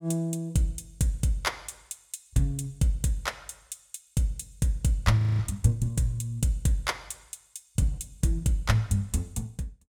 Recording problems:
audio freezing; at 5 s

